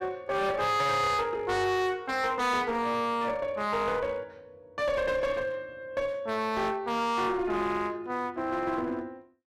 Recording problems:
distortion; hard clipping, uneven, signal-to-distortion ratio 6 dB

